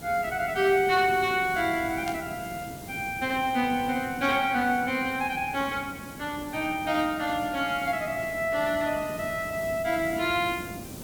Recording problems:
hiss; SNR 14 dB
burst of static; at 2 s; peak -8 dB vs average level

